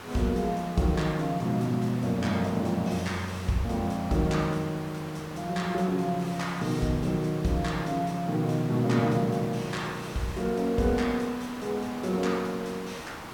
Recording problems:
background hiss; SNR 13 dB

